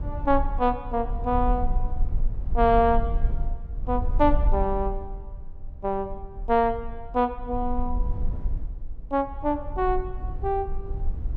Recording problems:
rumble; below 50 Hz, SNR 6 dB

